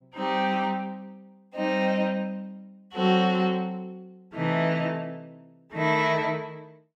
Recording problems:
none

